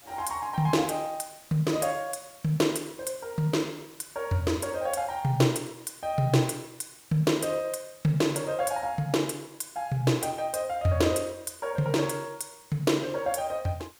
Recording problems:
hiss; slope -1 dB per octave, SNR 24 dB

